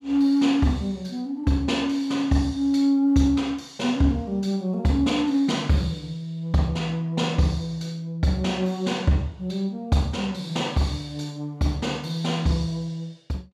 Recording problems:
none

